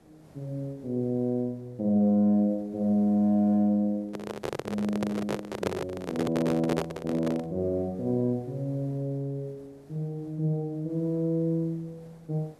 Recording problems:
hiss; SNR 28 dB
microphone handling noise; from 4 to 7.5 s; peak +3 dB vs average level

